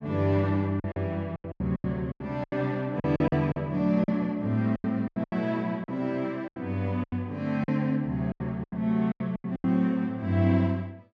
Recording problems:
packet loss; 14% of the sound replaced, filled with silence

